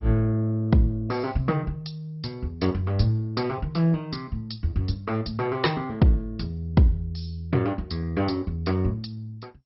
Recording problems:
lossy compression; MP2, log-spectral distance 3 dB, nothing above 5.5 kHz

